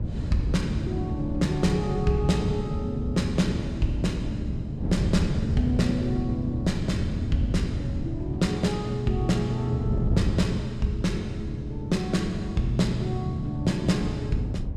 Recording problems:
wind on the microphone; below 160 Hz, SNR 4 dB

